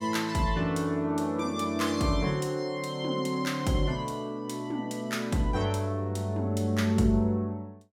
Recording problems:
none

